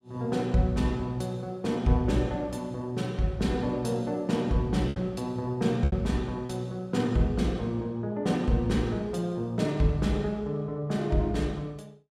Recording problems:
packet loss; 1.6% of the sound replaced, filled with repeated pitch periods

